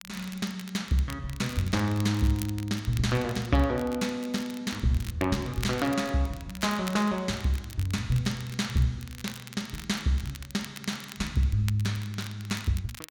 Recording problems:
crackle; vinyl, SNR 16 dB

